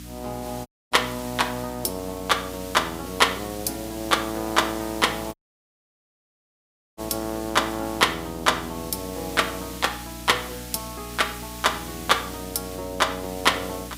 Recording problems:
electrical hum; 60 Hz, harmonics up to 300 Hz, SNR 16 dB
background hiss; SNR 14 dB
audio cutting out; at 0.5 s and at 5.5 s for 1.5 s

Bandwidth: 15.5 kHz